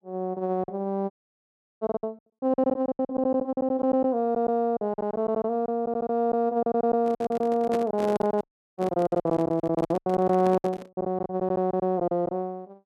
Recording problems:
packet loss; 16% of the sound replaced, filled with silence
dropout; at 1 s for 0.5 s and at 8.5 s
microphone handling noise; from 7 to 11 s; peak -2 dB vs average level

